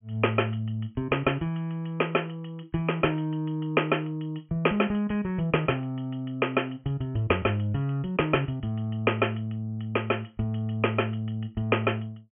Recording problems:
treble cut off; nothing above 3.2 kHz

